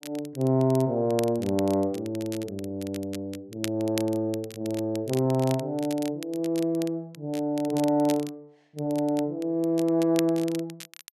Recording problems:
crackle; vinyl, SNR 16 dB

